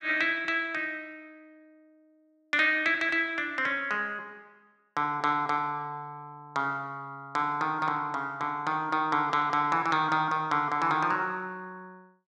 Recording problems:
none

